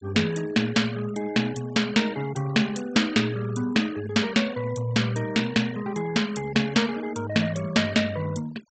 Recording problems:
treble missing; nothing above 8 kHz
noise reduction artefacts; signal-to-artefact ratio 19 dB

